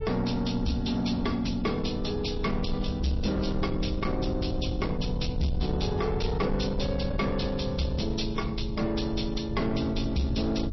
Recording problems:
lossy codec; MP3, log-spectral distance 4 dB, nothing above 5.7 kHz
distortion; soft clipping, signal-to-distortion ratio 11 dB
low-frequency rumble; below 110 Hz, SNR 6 dB

